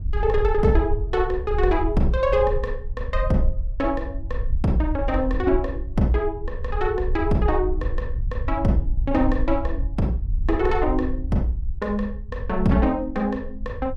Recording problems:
wind noise; below 60 Hz, SNR 5 dB

